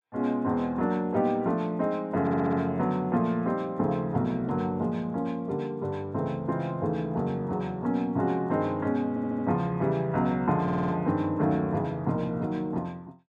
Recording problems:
stutter; at 2 s, at 9 s and at 11 s

